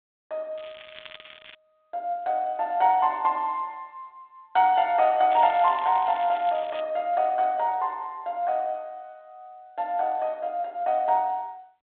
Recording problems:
phone line; 340 Hz to 3.8 kHz, G.726
crackling; at 0.5 s and from 5.5 to 7 s; loose cable, SNR 20 dB

